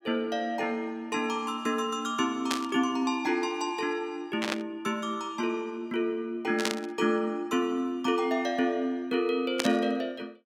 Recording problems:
burst of static; 4 times, first at 2.5 s; peak +4 dB vs average level

